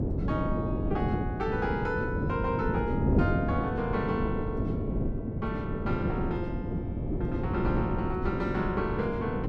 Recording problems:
wind on the microphone; below 300 Hz, SNR -2 dB

